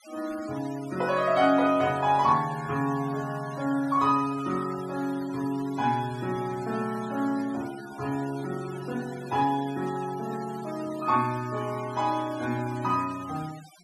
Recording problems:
denoising artefacts; signal-to-artefact ratio 18 dB

